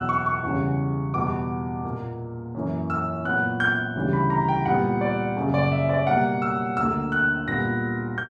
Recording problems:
none

